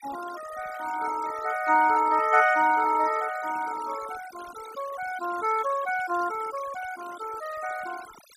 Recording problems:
denoising artefacts; signal-to-artefact ratio 16 dB

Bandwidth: 15 kHz